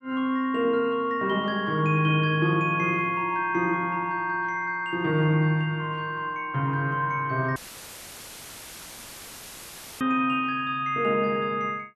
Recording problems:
audio cutting out; at 7.5 s for 2.5 s; filled with static

